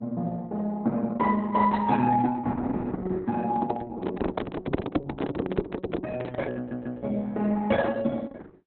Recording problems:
lossy compression; Opus, log-spectral distance 3 dB, nothing above 3.9 kHz
microphone handling noise; from 3.5 to 6.5 s; peak +6 dB vs average level
stutter; at 6.5 s

